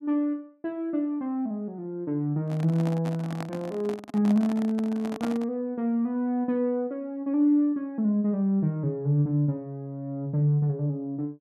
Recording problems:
microphone handling noise; from 2.5 to 5.5 s; peak -3 dB vs average level

